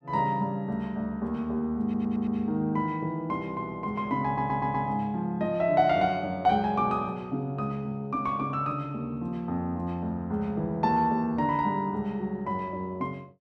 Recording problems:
stutter; at 2 s and at 4.5 s

